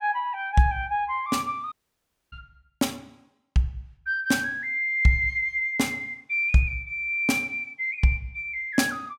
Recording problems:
dropout; at 1.5 s for 0.5 s

